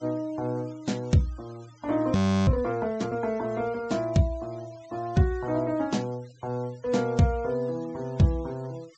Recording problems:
treble cut off; nothing above 8 kHz
noise reduction artefacts; signal-to-artefact ratio 25 dB
audio freezing; at 2 s

